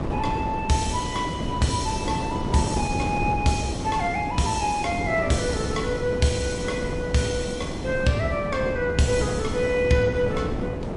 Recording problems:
lossy compression; MP3, log-spectral distance 2 dB, nothing above 10.7 kHz
wind on the microphone; below 440 Hz, SNR 5 dB

